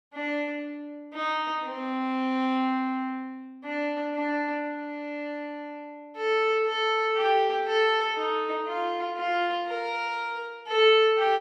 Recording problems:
none

